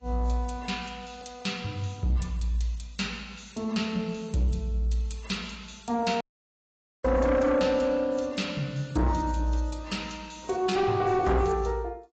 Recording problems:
lossy compression; AAC, log-spectral distance 4 dB, nothing above 7.6 kHz
distortion; soft clipping, signal-to-distortion ratio 11 dB
audio cutting out; at 6 s for 1 s

